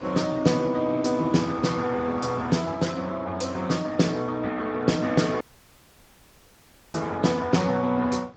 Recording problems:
codec artefacts; Speex, log-spectral distance 4 dB, nothing above 7.6 kHz
wind noise; below 970 Hz, SNR 20 dB
audio cutting out; at 5.5 s for 1.5 s

